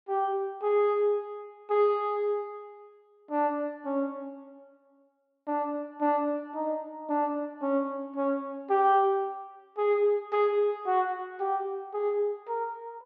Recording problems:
none

